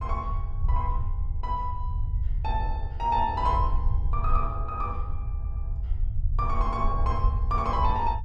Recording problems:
rumble; below 72 Hz, SNR 0 dB
stutter; at 5.5 s

